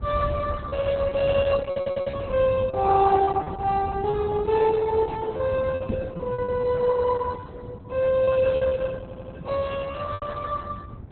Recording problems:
lossy compression; Opus, log-spectral distance 3 dB, nothing above 4 kHz
low-frequency rumble; below 150 Hz, SNR 11 dB
lost packets; 8% of the sound replaced, filled with repeated pitch periods
audio stuttering; at 1.5 s and at 9 s
microphone bump; at 6 s; peak +3 dB vs average level

